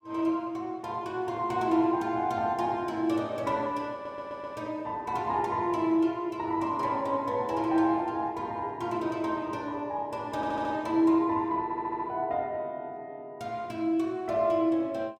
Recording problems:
audio stuttering; at 4 s, at 10 s and at 12 s

